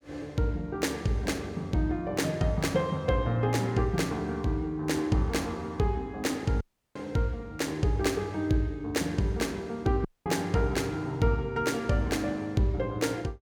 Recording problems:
dropout; at 6.5 s and at 10 s

